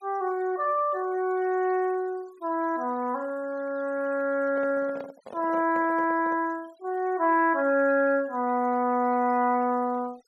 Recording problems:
noise reduction artefacts; signal-to-artefact ratio 27 dB
handling noise; from 4.5 to 6.5 s; peak -10 dB vs average level

